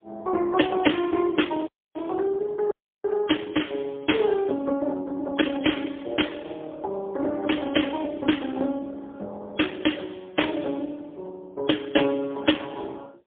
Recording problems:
phone line; 220 Hz to 3.4 kHz, AMR-NB, then MP3
dropout; at 1.5 s and at 2.5 s

